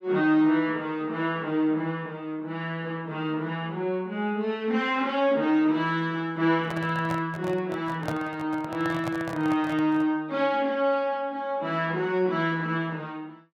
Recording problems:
microphone handling noise; from 6.5 to 10 s; peak -1 dB vs average level

